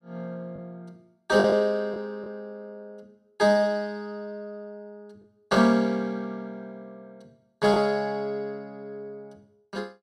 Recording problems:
packet loss; 2% of the sound replaced, filled with the last packet

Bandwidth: 13.5 kHz